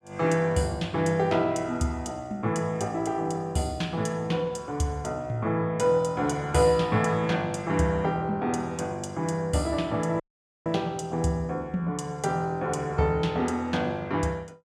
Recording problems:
dropout; at 10 s

